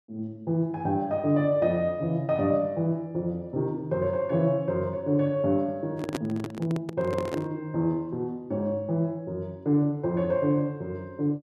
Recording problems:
handling noise; from 6 to 7.5 s; peak +1 dB vs average level

